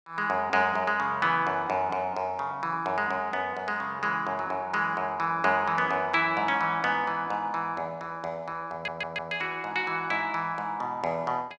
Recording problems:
audio stuttering; at 8.5 s

